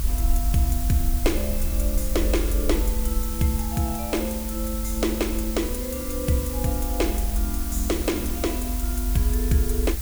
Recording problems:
hiss; slope +1 dB per octave, SNR 5 dB
low-frequency rumble; below 66 Hz, strongest tone 46 Hz, SNR 1 dB
wind on the microphone; below 100 Hz, SNR 14 dB

